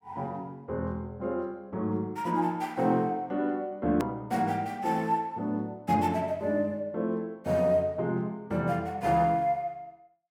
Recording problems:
click at an edit; at 4 s

